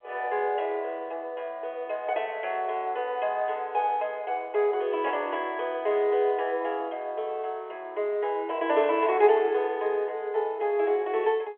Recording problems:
phone line; 340 Hz to 3.5 kHz, G.711

